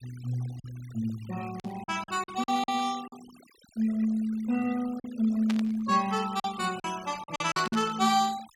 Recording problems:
noise reduction artefacts; signal-to-artefact ratio 19 dB
lost packets; 7% of the sound replaced, filled with silence
static burst; at 1.5 s, at 5.5 s and at 7.5 s; peak -3 dB vs average level

